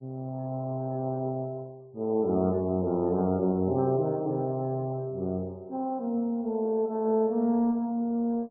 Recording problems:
lossy codec; MP2, then MP3, log-spectral distance 2 dB, nothing above 10.7 kHz

